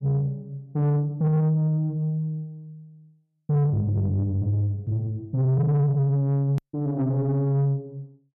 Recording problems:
distortion; soft clipping, signal-to-distortion ratio 10 dB
hard cut with a click; at 6.5 s

